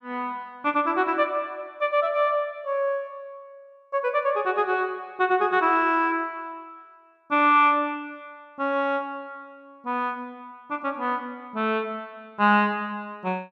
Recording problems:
none

